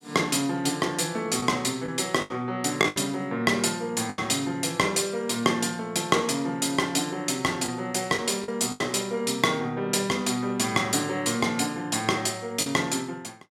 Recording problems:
packet loss; 4% of the sound replaced, filled with the last packet

